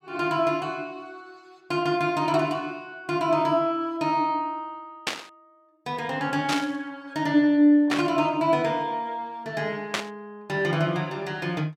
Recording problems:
burst of static; 4 times, first at 5 s; peak +3 dB vs average level

